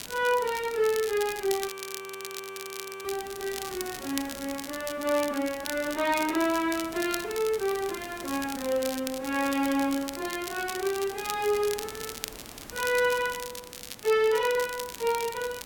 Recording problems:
background hiss; slope -4 dB per octave, SNR 18 dB
crackle; vinyl, SNR 10 dB
audio freezing; at 1.5 s for 1.5 s

